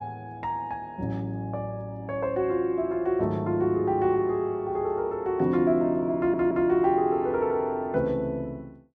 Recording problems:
audio stuttering; at 6 s

